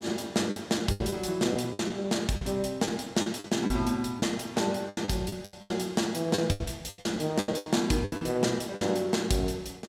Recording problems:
packet loss; 14% of the sound replaced, filled with the last packet

